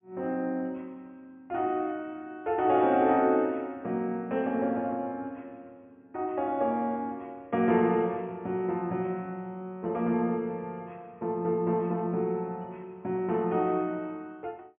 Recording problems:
low-pass filter; nothing above 3.3 kHz

